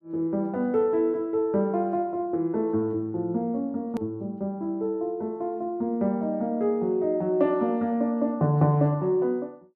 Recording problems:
click at an edit; at 4 s

